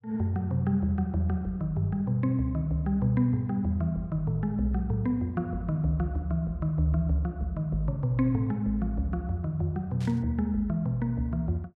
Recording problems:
static burst; at 10 s; peak -15 dB vs average level

